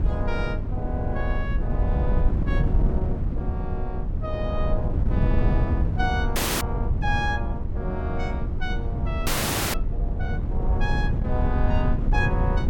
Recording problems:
wind on the microphone; below 110 Hz, SNR -5 dB
audio freezing; at 6.5 s and at 9.5 s

